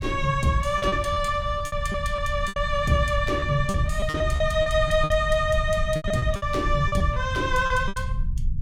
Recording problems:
low-frequency rumble; below 100 Hz, SNR 6 dB
packet loss; 13% of the sound replaced, filled with repeated pitch periods

